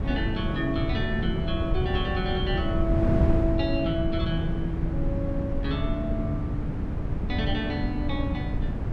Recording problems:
wind on the microphone; below 170 Hz, SNR -1 dB

